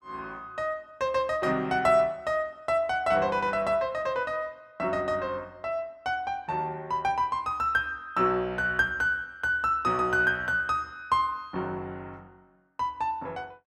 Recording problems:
none

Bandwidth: 14 kHz